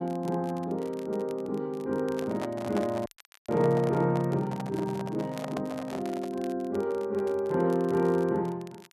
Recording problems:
crackling; vinyl, SNR 24 dB
handling noise; from 2 to 6.5 s; peak -2 dB vs average level
audio cutting out; at 3 s

